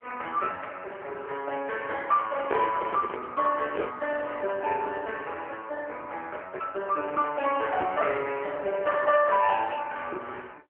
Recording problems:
telephone audio; 320 Hz to 2.6 kHz, AMR-NB
handling noise; from 2.5 to 4 s; peak +3 dB vs average level

